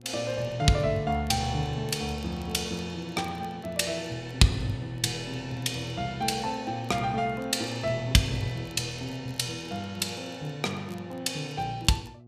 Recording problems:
hum; 60 Hz, harmonics up to 840 Hz, SNR 22 dB
crackle; vinyl, SNR 29 dB

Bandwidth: 14.5 kHz